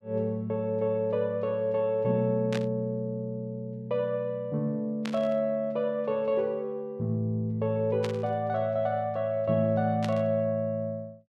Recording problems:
static burst; 4 times, first at 2.5 s; peak -4 dB vs average level

